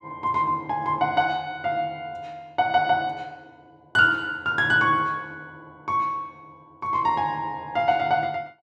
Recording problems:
none

